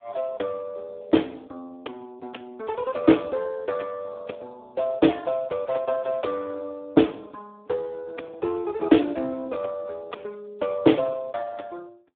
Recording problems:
telephone audio; 240 Hz to 3.6 kHz, Speex

